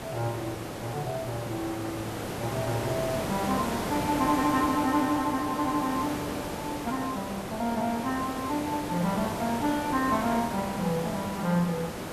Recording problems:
hiss; slope -6 dB per octave, SNR 4 dB

